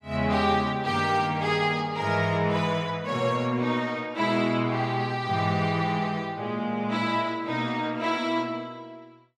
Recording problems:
none

